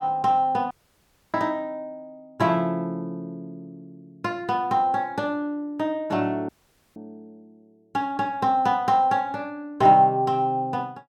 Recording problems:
dropout; at 0.5 s for 0.5 s and at 6.5 s

